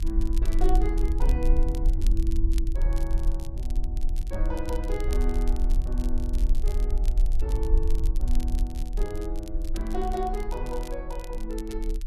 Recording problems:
low-frequency rumble; below 44 Hz, SNR -6 dB
crackle; vinyl, SNR 14 dB

